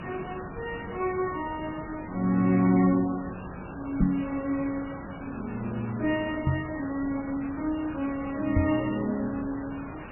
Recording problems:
lossy codec; MP3, log-spectral distance 8 dB, nothing above 2.8 kHz
hiss; SNR 11 dB
knock on the microphone; at 4 s, at 6.5 s and at 8.5 s; peak +9 dB vs average level

